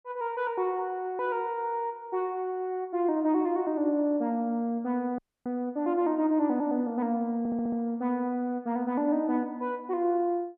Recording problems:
dropout; at 5 s
stutter; at 7.5 s

